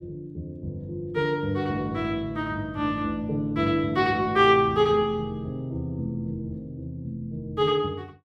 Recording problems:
none

